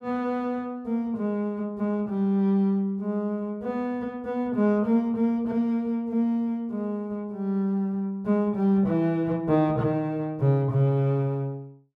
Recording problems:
none

